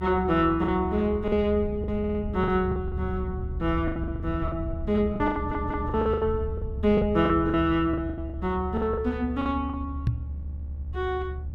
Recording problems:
mains hum; 60 Hz, harmonics up to 600 Hz, SNR 20 dB
low-frequency rumble; below 86 Hz, strongest tone 72 Hz, SNR 8 dB
packet loss; 12% of the sound replaced, filled with the last packet
stutter; at 2 s and at 5.5 s
microphone bump; at 10 s; peak +6 dB vs average level

